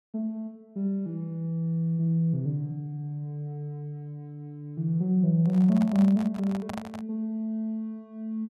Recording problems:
microphone handling noise; from 5.5 to 7 s; peak -5 dB vs average level

